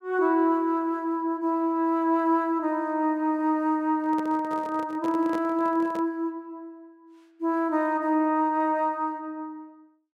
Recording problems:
microphone handling noise; from 4 to 6 s; peak -8 dB vs average level

